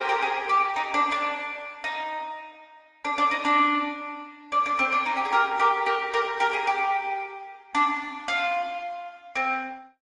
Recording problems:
lossy compression; MP3, then Opus, log-spectral distance 3 dB, nothing above 9.8 kHz

